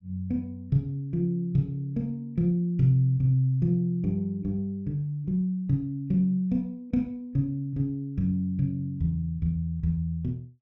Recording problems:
none

